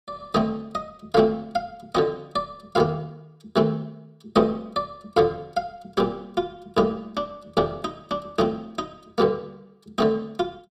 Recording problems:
none

